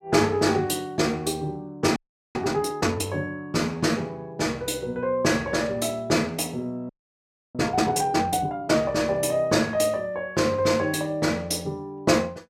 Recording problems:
audio freezing; at 2 s and at 7 s for 0.5 s

